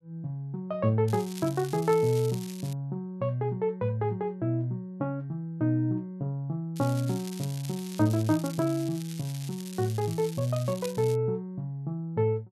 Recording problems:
crackling; from 1 to 2.5 s and from 7 to 11 s; loose cable, SNR 15 dB

